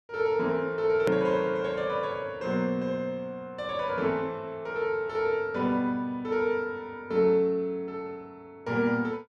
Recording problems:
click at an edit; at 1 s

